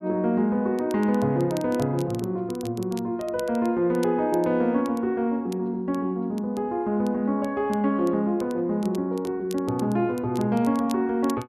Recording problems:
crackling; vinyl, SNR 23 dB

